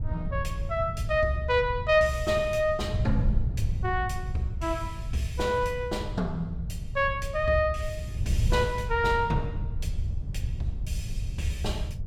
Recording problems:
wind noise; below 110 Hz, SNR 5 dB

